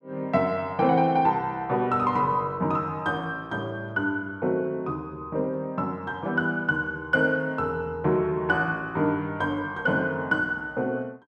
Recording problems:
none

